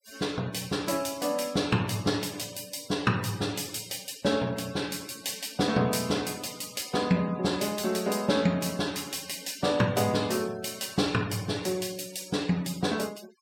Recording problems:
noise reduction artefacts; signal-to-artefact ratio 20 dB

